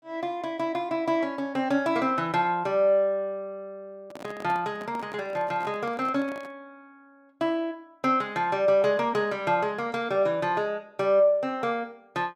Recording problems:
microphone handling noise; from 4 to 6.5 s; peak -11 dB vs average level

